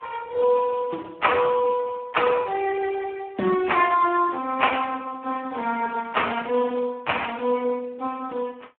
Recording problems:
telephone audio; 220 Hz to 3.3 kHz, Speex

